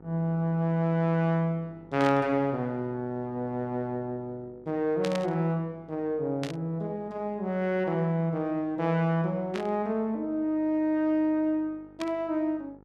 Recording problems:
electrical hum; 50 Hz, harmonics up to 1.4 kHz, SNR 26 dB
static burst; 5 times, first at 2 s; peak -3 dB vs average level

